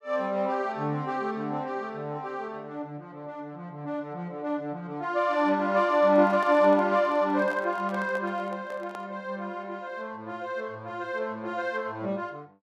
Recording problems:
microphone handling noise; from 6 to 9 s; peak -8 dB vs average level

